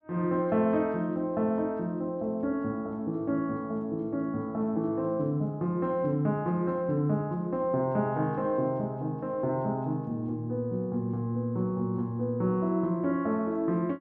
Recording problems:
none

